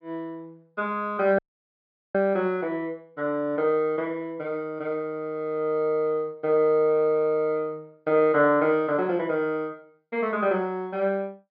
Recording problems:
treble cut off; nothing above 5.5 kHz
dropout; at 1.5 s for 1 s

